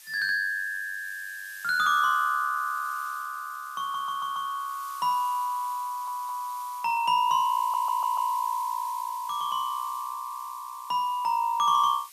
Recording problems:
hiss; slope +5 dB per octave, SNR 18 dB
stutter; at 4 s, at 6 s and at 7.5 s

